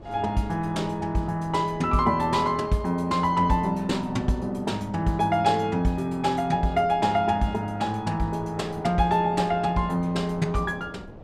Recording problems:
wind noise; below 490 Hz, SNR 20 dB

